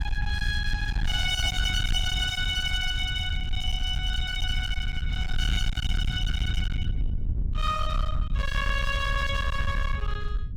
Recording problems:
distorted audio; hard clipping, signal-to-distortion ratio 12 dB
wind on the microphone; below 86 Hz, SNR 2 dB

